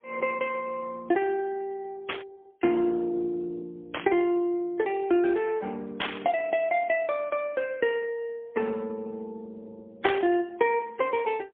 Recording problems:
phone line; 260 Hz to 3.5 kHz, AMR-NB, then MP3
burst of static; 4 times, first at 2 s; peak +4 dB vs average level

